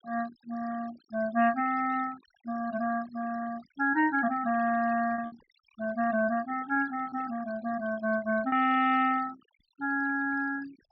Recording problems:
treble missing; nothing above 5.6 kHz
noise reduction artefacts; signal-to-artefact ratio 18 dB
packet loss; 1.9% of the sound replaced, filled with repeated pitch periods

